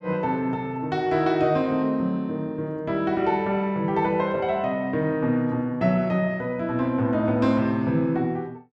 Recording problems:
none

